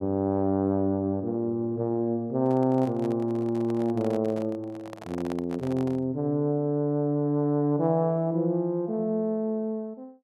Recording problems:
microphone handling noise; from 2.5 to 6 s; peak -8 dB vs average level

